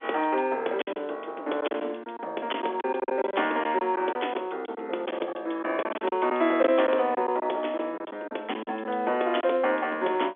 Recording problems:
telephone audio; 280 Hz to 3.5 kHz, G.711
packet loss; 9% of the sound replaced, filled with silence

